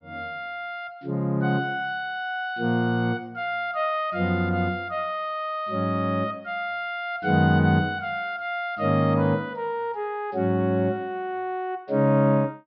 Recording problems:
low-pass filter; nothing above 5.5 kHz

